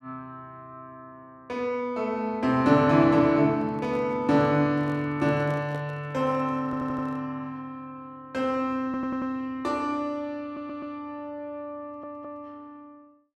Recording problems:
microphone handling noise; from 3.5 to 7 s; peak -10 dB vs average level
audio stuttering; 4 times, first at 6.5 s

